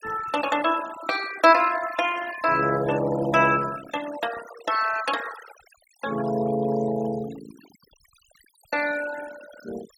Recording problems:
denoising artefacts; signal-to-artefact ratio 14 dB

